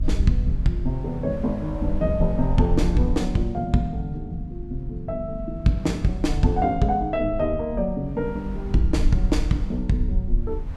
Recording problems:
electrical hum; 50 Hz, harmonics up to 300 Hz, SNR 14 dB
rumble; below 62 Hz, SNR 6 dB
wind noise; below 930 Hz, SNR 22 dB

